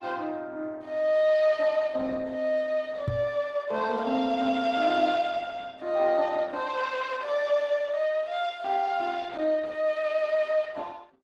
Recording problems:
lossy codec; Opus, log-spectral distance 3 dB
microphone bump; at 3 s; peak +3 dB vs average level

